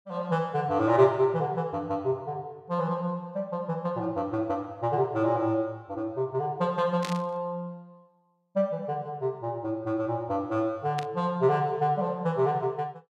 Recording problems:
static burst; at 7 s and at 11 s; peak -3 dB vs average level

